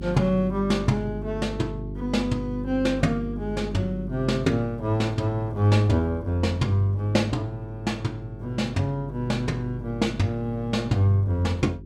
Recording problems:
hum; 50 Hz, harmonics up to 400 Hz, SNR 11 dB

